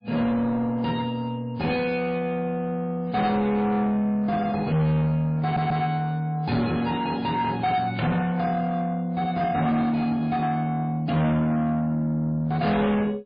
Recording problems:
codec artefacts; MP3, log-spectral distance 2 dB, nothing above 4.2 kHz
distorted audio; soft clipping, signal-to-distortion ratio 7 dB
stutter; at 5.5 s

